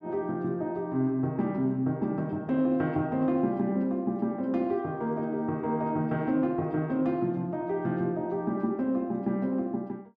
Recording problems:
none

